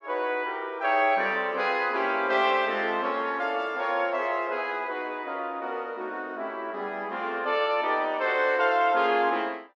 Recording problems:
none

